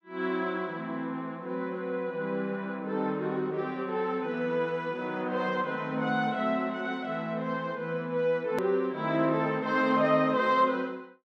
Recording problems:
click at an edit; at 8.5 s

